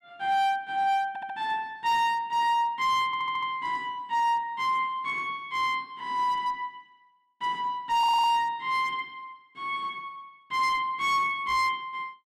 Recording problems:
distorted audio; hard clipping, uneven, signal-to-distortion ratio 10 dB
audio stuttering; at 1 s, at 3 s and at 8 s

